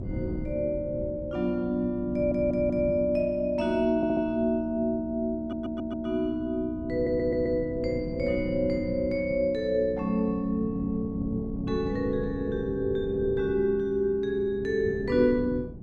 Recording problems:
hum; 60 Hz, harmonics up to 360 Hz, SNR 19 dB
wind noise; below 230 Hz, SNR 12 dB
stutter; 4 times, first at 2 s

